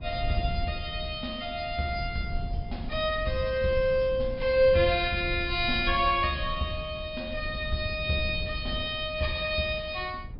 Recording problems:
low-pass filter; nothing above 5.5 kHz
low-frequency rumble; below 94 Hz, SNR 10 dB

